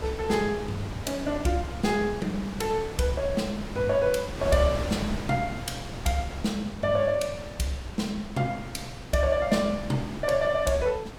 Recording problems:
wind noise; below 820 Hz, SNR 10 dB

